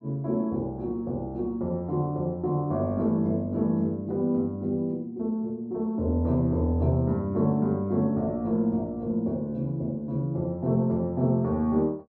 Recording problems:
none

